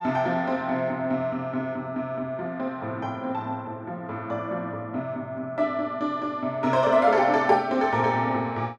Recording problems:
none

